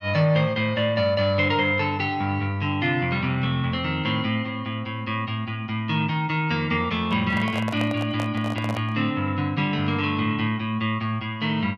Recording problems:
microphone handling noise; from 7 to 9 s; peak -4 dB vs average level

